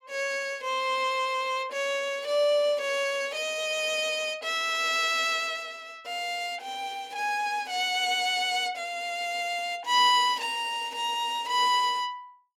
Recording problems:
none

